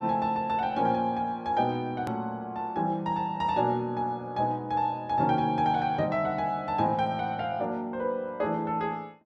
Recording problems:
click at an edit; at 2 s

